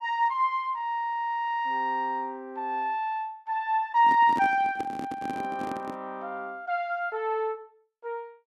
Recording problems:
microphone handling noise; from 4 to 6 s; peak -3 dB vs average level

